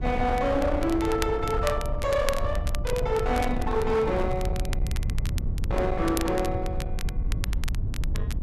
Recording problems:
distorted audio; hard clipping, signal-to-distortion ratio 10 dB
low-frequency rumble; below 98 Hz, SNR 5 dB
crackling; vinyl, SNR 14 dB
handling noise; from 3 to 4.5 s; peak -10 dB vs average level

